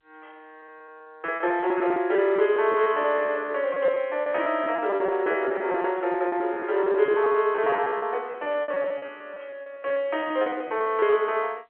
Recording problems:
telephone audio; 320 Hz to 3.6 kHz, G.711
lost packets; 17% of the sound replaced, filled with repeated pitch periods

